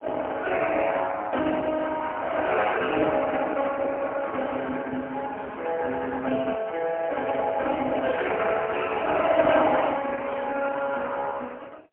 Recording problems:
phone line; 260 Hz to 3.1 kHz, AMR-NB, then MP3

